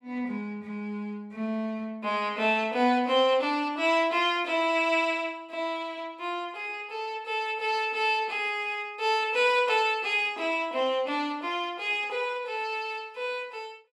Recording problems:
none

